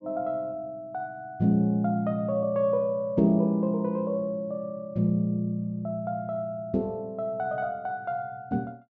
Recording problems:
treble cut off; nothing above 8 kHz

